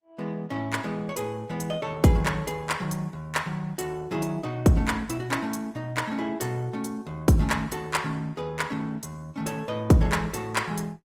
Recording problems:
codec artefacts; Opus, log-spectral distance 3 dB

